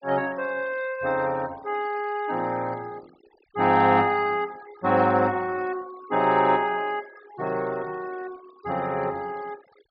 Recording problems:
low-pass filter; nothing above 5.5 kHz
noise reduction artefacts; signal-to-artefact ratio 22 dB

